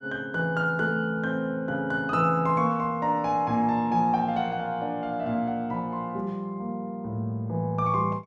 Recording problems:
none

